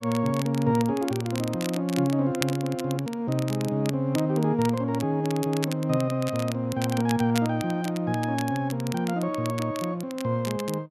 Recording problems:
crackle; vinyl, SNR 13 dB

